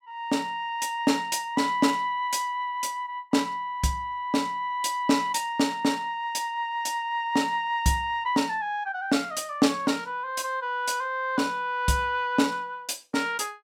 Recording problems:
none

